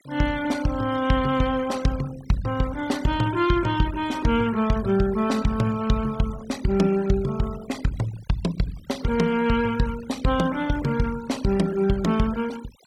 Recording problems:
denoising artefacts; signal-to-artefact ratio 18 dB

